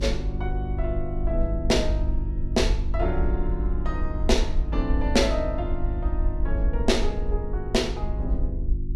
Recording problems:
electrical hum; 50 Hz, harmonics up to 350 Hz, SNR 4 dB
low-frequency rumble; below 56 Hz, SNR 1 dB

